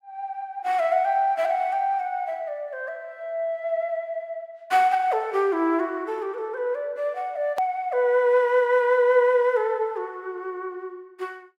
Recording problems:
click at an edit; at 7.5 s

